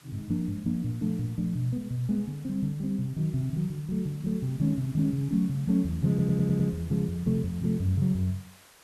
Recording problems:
hiss; slope -1 dB per octave, SNR 24 dB
audio stuttering; at 6 s

